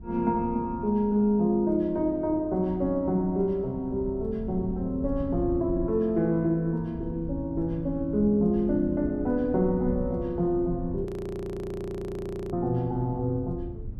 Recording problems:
wind on the microphone; below 120 Hz, SNR 13 dB
audio freezing; at 11 s for 1.5 s

